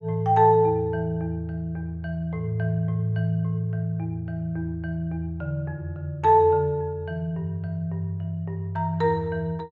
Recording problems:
none

